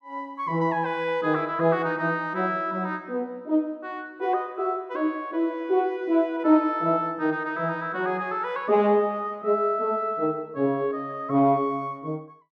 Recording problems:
none

